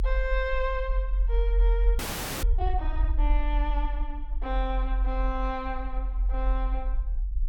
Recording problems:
rumble; below 46 Hz, strongest tone 42 Hz, SNR -5 dB
frozen audio; at 2 s

